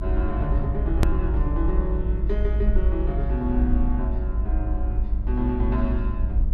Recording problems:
hum; 50 Hz, harmonics up to 1 kHz, SNR 10 dB
rumble; below 58 Hz, SNR -4 dB
edit click; at 1 s

